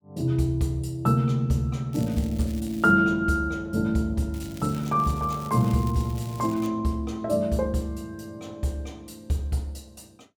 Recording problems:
crackling; at 2 s and from 4.5 to 6.5 s; loose cable, SNR 21 dB

